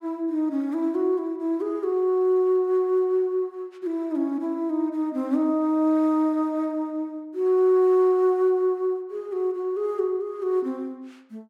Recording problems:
none

